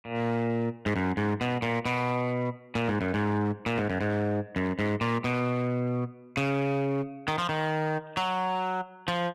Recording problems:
distorted audio; hard clipping, uneven, signal-to-distortion ratio 11 dB

